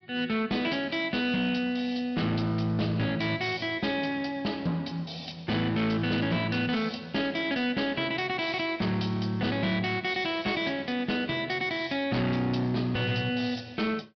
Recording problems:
low-pass filter; nothing above 5.5 kHz
distorted audio; hard clipping, signal-to-distortion ratio 12 dB

